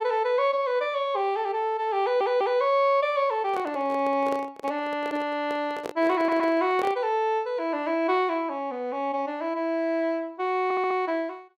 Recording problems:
audio stuttering; at 2 s, at 6 s and at 11 s
handling noise; from 3.5 to 7 s; peak -4 dB vs average level

